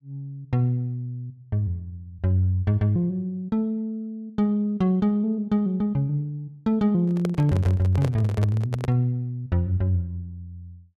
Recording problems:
microphone handling noise; from 7 to 9 s; peak -3 dB vs average level

